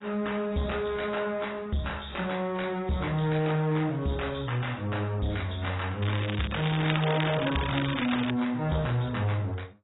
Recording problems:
lossy codec; AAC, log-spectral distance 7 dB, nothing above 3.9 kHz
distorted audio; soft clipping, signal-to-distortion ratio 10 dB
crackle; from 6 to 8.5 s; loose cable, SNR 6 dB

